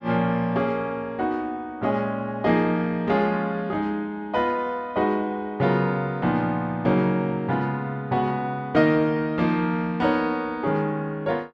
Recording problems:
none

